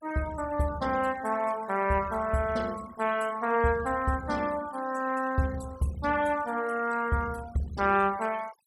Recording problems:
noise reduction artefacts; signal-to-artefact ratio 18 dB

